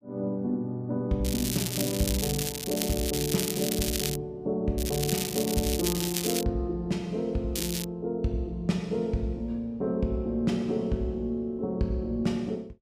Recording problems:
crackle; from 1.5 to 4 s, from 5 to 6.5 s and at 7.5 s; loose cable, SNR 2 dB

